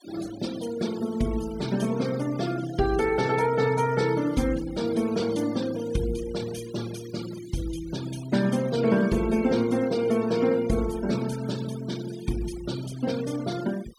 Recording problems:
noise reduction artefacts; signal-to-artefact ratio 16 dB

